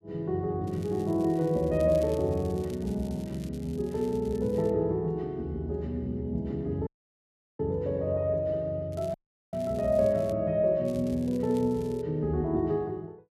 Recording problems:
crackle; from 0.5 to 4.5 s, from 9 to 10 s and from 11 to 12 s; loose cable, SNR 25 dB
audio cutting out; at 7 s for 0.5 s and at 9 s

